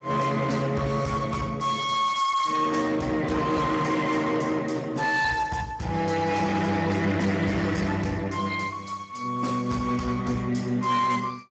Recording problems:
codec artefacts; Speex, log-spectral distance 4 dB, nothing above 7.6 kHz
distortion; hard clipping, uneven, signal-to-distortion ratio 10 dB

